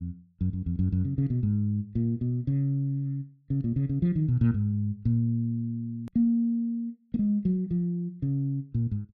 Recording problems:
hard cut with a click; at 6 s

